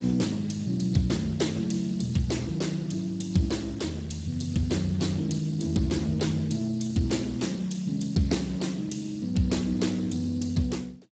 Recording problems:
lossy codec; Speex, log-spectral distance 5 dB, nothing above 7.8 kHz

